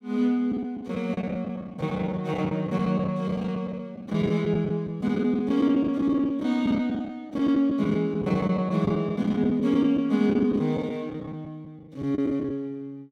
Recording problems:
packet loss; 13% of the sound replaced, filled with the last packet

